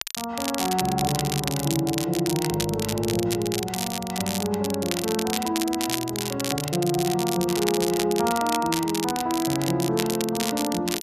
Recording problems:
crackle; vinyl, SNR 5 dB

